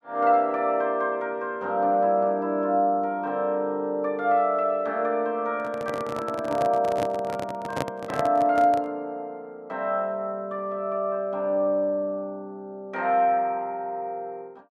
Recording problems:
handling noise; from 5.5 to 9 s; peak +1 dB vs average level

